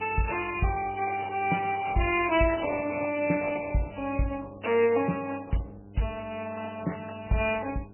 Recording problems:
lossy codec; Opus, then MP3, log-spectral distance 6 dB, nothing above 2.4 kHz
hum; 50 Hz, harmonics up to 1.1 kHz, SNR 19 dB

